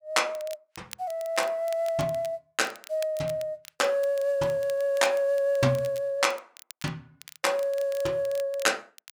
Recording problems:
crackle; vinyl, SNR 20 dB

